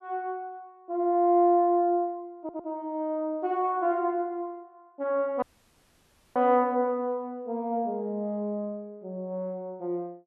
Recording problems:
stutter; at 2.5 s
dropout; at 5.5 s for 1 s

